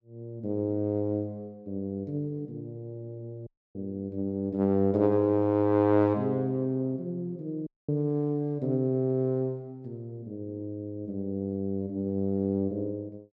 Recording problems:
audio cutting out; at 3.5 s and at 7.5 s

